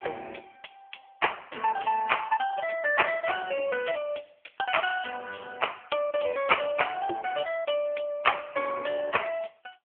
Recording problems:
phone line; 300 Hz to 3.3 kHz, AMR-NB

